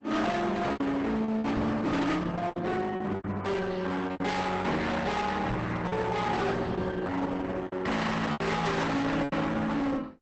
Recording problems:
codec artefacts; Opus, log-spectral distance 3 dB, nothing above 8 kHz
distortion; hard clipping, signal-to-distortion ratio 6 dB
lost packets; 7% of the sound replaced, filled with repeated pitch periods
knock on the microphone; at 1.5 s and at 5.5 s; peak 0 dB vs average level

